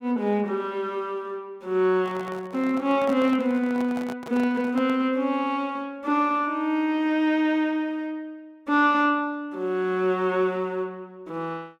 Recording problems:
handling noise; from 2 to 5 s; peak -8 dB vs average level

